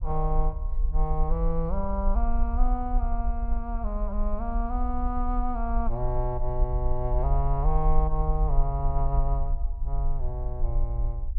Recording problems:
treble cut off; nothing above 5.5 kHz
rumble; below 48 Hz, SNR -2 dB

